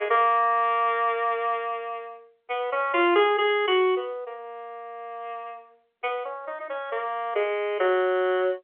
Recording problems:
telephone audio; 300 Hz to 3.5 kHz, G.711

